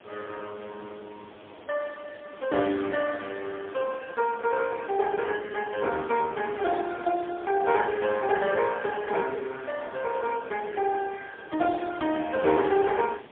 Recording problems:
telephone audio; 190 Hz to 3.3 kHz, AMR-NB, then MP3
hiss; SNR 21 dB

